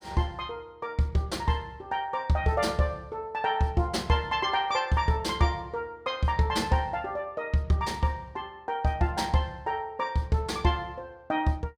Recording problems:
none

